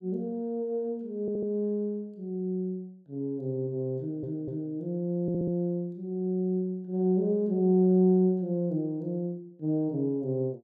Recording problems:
stutter; at 1 s, at 4 s and at 5 s

